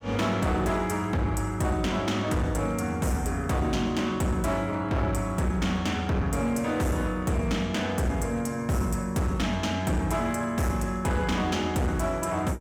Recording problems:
distortion; hard clipping, signal-to-distortion ratio 10 dB

